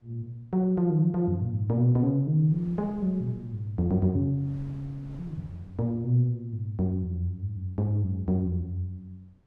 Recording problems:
wind on the microphone; below 230 Hz, SNR 23 dB

